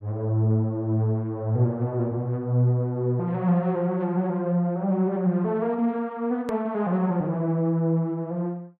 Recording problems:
click at an edit; at 6.5 s

